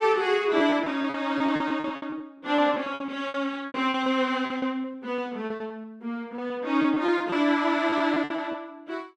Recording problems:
packet loss; 14% of the sound replaced, filled with repeated pitch periods

